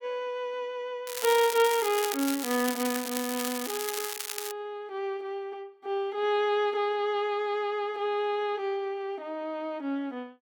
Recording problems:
crackling; from 1 to 4.5 s; loose cable, SNR 4 dB

